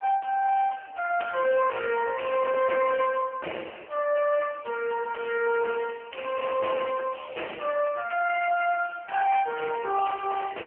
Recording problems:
phone line; 320 Hz to 2.2 kHz, AMR-NB
distortion; hard clipping, signal-to-distortion ratio 11 dB

